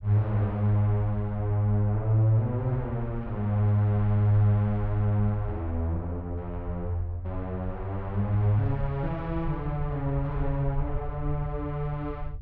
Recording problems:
low-frequency rumble; below 70 Hz, SNR 12 dB

